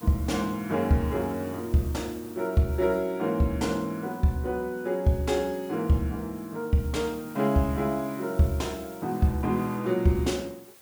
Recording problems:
background hiss; slope -2 dB per octave, SNR 21 dB

